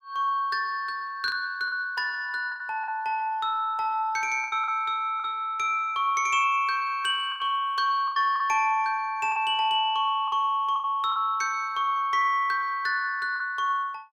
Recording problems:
lost packets; 6% of the sound replaced, filled with the last packet

